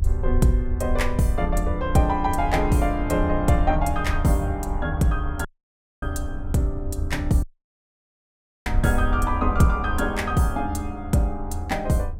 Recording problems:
rumble; below 78 Hz, SNR 5 dB
wind noise; below 290 Hz, SNR 19 dB
audio cutting out; at 5.5 s for 0.5 s and at 7.5 s for 1 s

